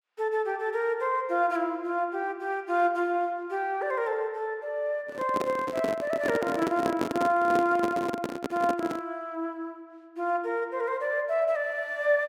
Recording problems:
microphone handling noise; from 5 to 9 s; peak +3 dB vs average level

